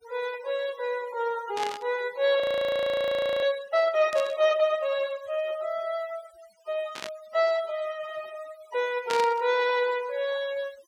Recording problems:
noise reduction artefacts; signal-to-artefact ratio 21 dB
static burst; 4 times, first at 1.5 s; peak -2 dB vs average level
audio freezing; at 2.5 s for 1 s

